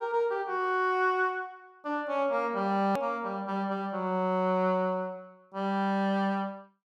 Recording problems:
edit click; at 3 s

